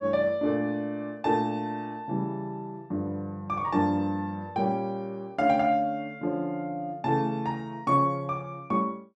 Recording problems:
none

